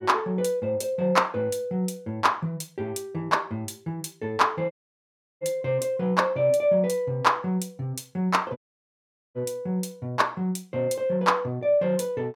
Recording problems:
dropout; at 4.5 s for 0.5 s and at 8.5 s for 1 s

